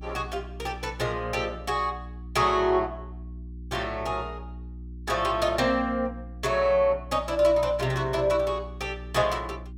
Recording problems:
mains hum; 60 Hz, harmonics up to 360 Hz, SNR 14 dB

